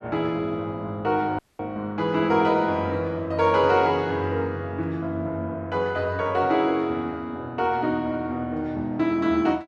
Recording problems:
audio cutting out; at 1.5 s

